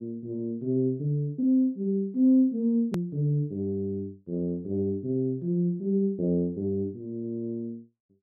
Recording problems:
click at an edit; at 3 s

